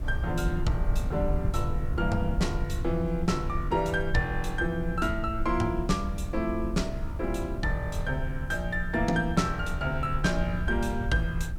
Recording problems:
background hiss; SNR 29 dB
low-frequency rumble; below 76 Hz, SNR 5 dB

